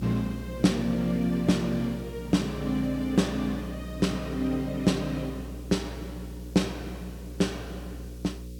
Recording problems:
hum; 60 Hz, harmonics up to 540 Hz, SNR 12 dB
background hiss; slope +8 dB per octave, SNR 25 dB

